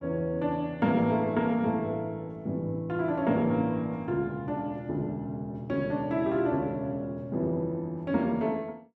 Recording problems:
none

